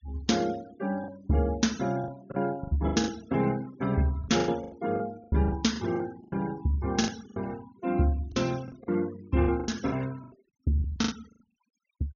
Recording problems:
treble missing; nothing above 6.8 kHz
denoising artefacts; signal-to-artefact ratio 20 dB
lost packets; 12% of the sound replaced, filled with the last packet

